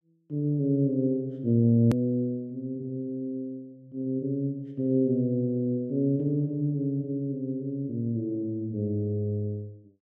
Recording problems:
click at an edit; at 2 s

